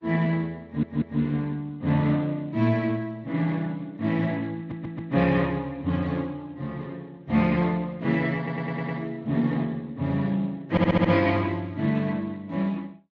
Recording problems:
lossy codec; MP3, then Speex, log-spectral distance 2 dB
audio stuttering; 4 times, first at 0.5 s

